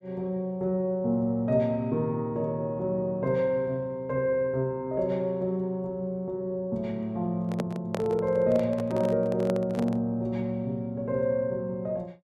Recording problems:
handling noise; from 7.5 to 10 s; peak -1 dB vs average level

